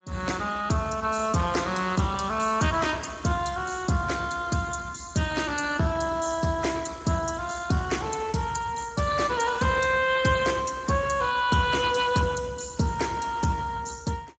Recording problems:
lossy codec; Speex, log-spectral distance 6 dB, nothing above 7.3 kHz

